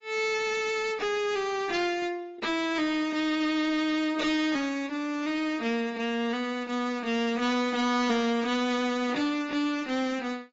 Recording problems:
lossy codec; AAC, then AAC, log-spectral distance 3 dB, nothing above 7.6 kHz
distorted audio; hard clipping, signal-to-distortion ratio 6 dB

